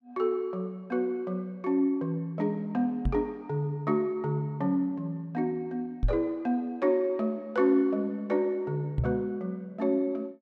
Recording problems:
knock on the microphone; at 3 s, at 6 s and at 9 s; peak +5 dB vs average level

